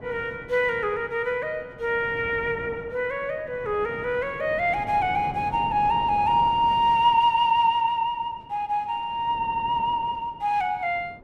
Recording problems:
wind on the microphone; below 540 Hz, SNR 17 dB
audio stuttering; at 9.5 s

